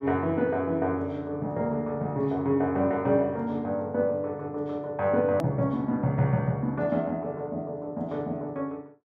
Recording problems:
hard cut with a click; at 5.5 s

